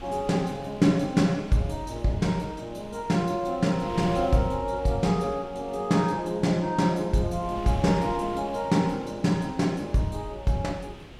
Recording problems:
wind noise; below 970 Hz, SNR 17 dB

